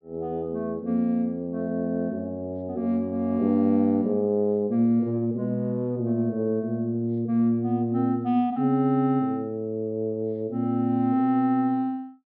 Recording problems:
treble cut off; nothing above 5.2 kHz

